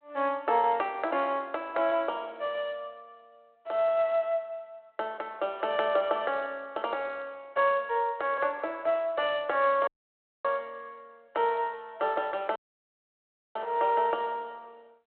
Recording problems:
telephone audio; 280 Hz to 3.5 kHz, G.726
dropout; at 10 s for 0.5 s and at 13 s for 1 s

